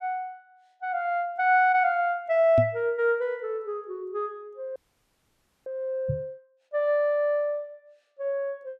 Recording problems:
microphone thump; at 2.5 s and at 6 s; peak +2 dB vs average level
audio freezing; at 5 s for 1 s

